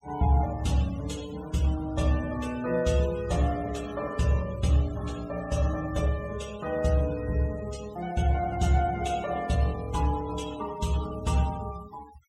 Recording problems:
denoising artefacts; signal-to-artefact ratio 17 dB

